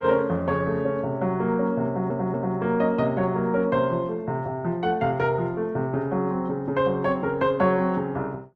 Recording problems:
codec artefacts; Opus, log-spectral distance 2 dB
stutter; at 2 s

